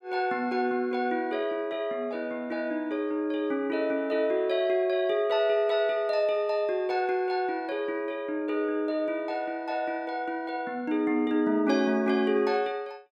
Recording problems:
none

